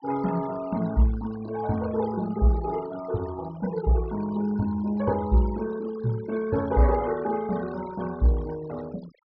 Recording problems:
treble missing; nothing above 5.5 kHz
noise reduction artefacts; signal-to-artefact ratio 18 dB

